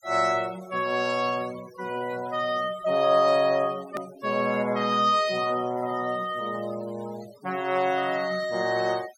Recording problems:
denoising artefacts; signal-to-artefact ratio 20 dB
hard cut with a click; at 4 s

